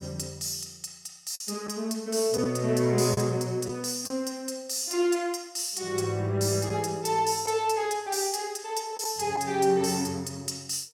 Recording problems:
packet loss; 2% of the sound replaced, filled with the last packet

